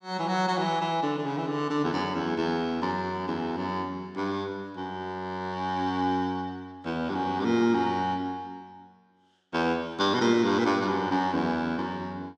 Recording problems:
none

